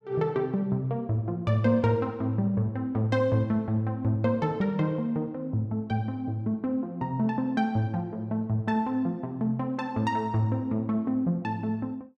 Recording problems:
none

